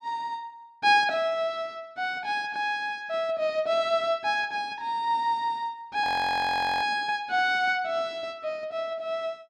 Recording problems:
frozen audio; at 6 s for 1 s

